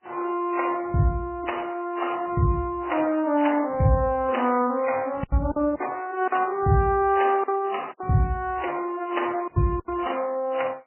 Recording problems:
codec artefacts; MP3, then AAC, log-spectral distance 3 dB, nothing above 3 kHz
lost packets; 4% of the sound replaced, filled with silence

